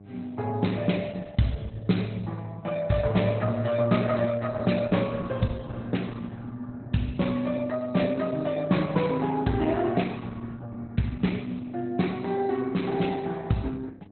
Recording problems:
lossy compression; Opus, log-spectral distance 4 dB, nothing above 4.1 kHz
mains hum; 50 Hz, harmonics up to 800 Hz, SNR 23 dB

